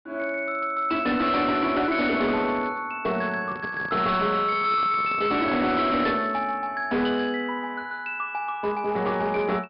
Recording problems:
low-pass filter; nothing above 5.5 kHz
distorted audio; hard clipping, uneven, signal-to-distortion ratio 11 dB
handling noise; from 3.5 to 6 s; peak -8 dB vs average level

